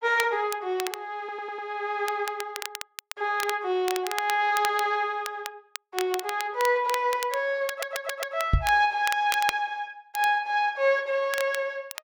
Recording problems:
crackling; vinyl, SNR 10 dB
stutter; at 1 s and at 7.5 s
microphone thump; at 8.5 s; peak +8 dB vs average level

